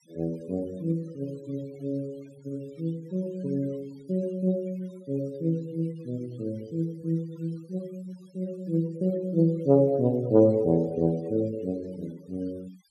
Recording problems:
denoising artefacts; signal-to-artefact ratio 26 dB

